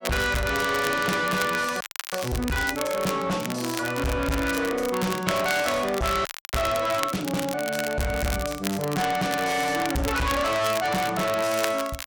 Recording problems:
distorted audio; soft clipping, signal-to-distortion ratio 6 dB
crackling; vinyl, SNR 9 dB
frozen audio; at 2 s and at 6.5 s

